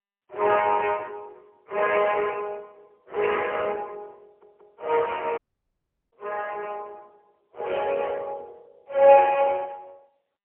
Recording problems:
telephone audio; 370 Hz to 3.1 kHz, AMR-NB, then MP3
audio stuttering; at 4.5 s
dropout; at 5.5 s for 0.5 s

